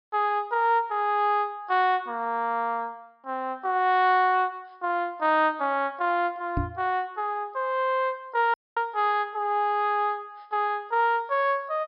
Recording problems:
treble missing; nothing above 5.2 kHz
knock on the microphone; at 6.5 s; peak 0 dB vs average level
audio cutting out; at 8.5 s

